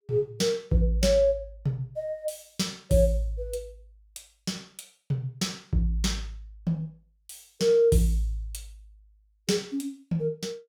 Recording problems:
none

